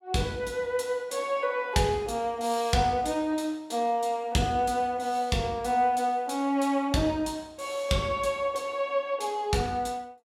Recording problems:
none

